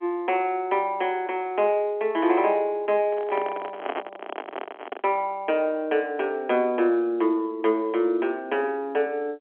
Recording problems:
telephone audio; 220 Hz to 3.3 kHz, G.711
handling noise; from 3 to 5 s; peak -1 dB vs average level

